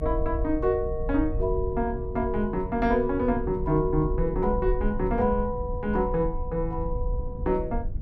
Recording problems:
rumble; below 68 Hz, SNR 7 dB
wind noise; below 180 Hz, SNR 15 dB

